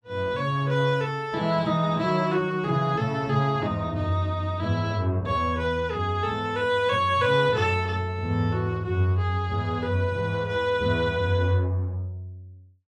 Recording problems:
none

